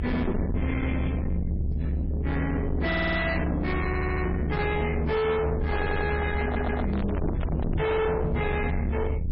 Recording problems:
lossy codec; MP3, log-spectral distance 2 dB, nothing above 4.8 kHz
distortion; soft clipping, signal-to-distortion ratio 6 dB
rumble; below 240 Hz, strongest tone 72 Hz, SNR 2 dB
audio stuttering; 4 times, first at 3 s
microphone handling noise; from 5.5 to 8 s; peak -1 dB vs average level

